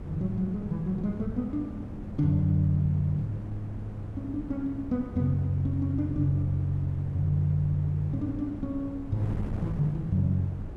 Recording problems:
wind noise; below 240 Hz, SNR 12 dB

